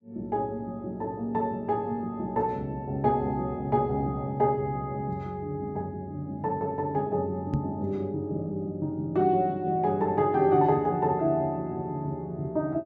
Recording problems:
microphone bump; at 7.5 s; peak +3 dB vs average level

